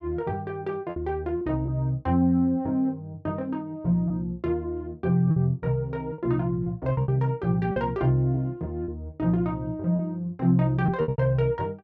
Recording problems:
packet loss; 6% of the sound replaced, filled with repeated pitch periods

